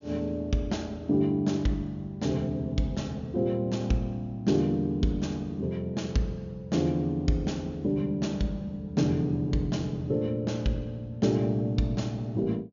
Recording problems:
treble missing; nothing above 7 kHz

